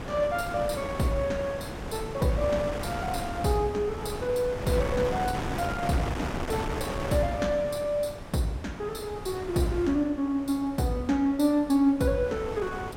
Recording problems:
wind on the microphone; below 990 Hz, SNR 7 dB

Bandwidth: 16 kHz